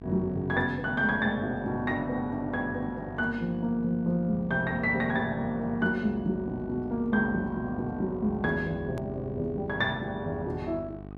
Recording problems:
hum; 50 Hz, harmonics up to 1.2 kHz, SNR 14 dB
edit click; at 9 s

